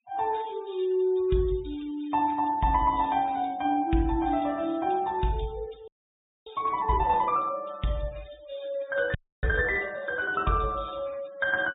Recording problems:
treble cut off; nothing above 4 kHz
noise reduction artefacts; signal-to-artefact ratio 24 dB
frozen audio; at 6 s for 0.5 s and at 9 s

